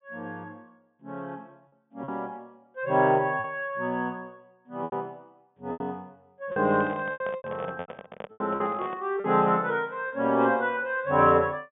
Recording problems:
treble missing; nothing above 3.5 kHz
packet loss; 8% of the sound replaced, filled with repeated pitch periods
microphone handling noise; from 6.5 to 9 s; peak -8 dB vs average level

